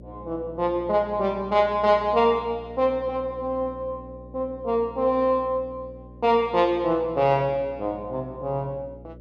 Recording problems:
hum; 60 Hz, harmonics up to 600 Hz, SNR 20 dB

